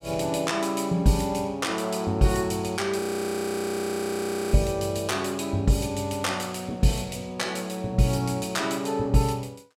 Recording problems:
frozen audio; at 3 s for 1.5 s

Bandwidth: 16 kHz